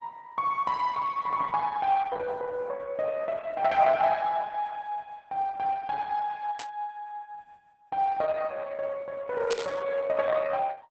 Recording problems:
codec artefacts; Opus, log-spectral distance 3 dB, nothing above 7.3 kHz
burst of static; at 6.5 s and at 9.5 s; peak -7 dB vs average level

